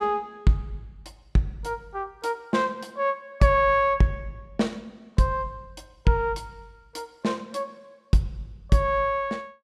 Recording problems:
none

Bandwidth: 14.5 kHz